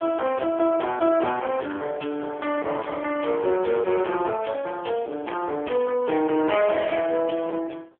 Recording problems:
telephone audio; 260 Hz to 3.2 kHz, AMR-NB
distortion; soft clipping, signal-to-distortion ratio 10 dB

